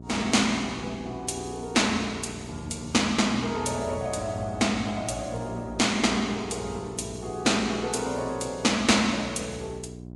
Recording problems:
lossy compression; Vorbis, log-spectral distance 4 dB, nothing above 10.4 kHz
hum; 60 Hz, harmonics up to 720 Hz, SNR 15 dB

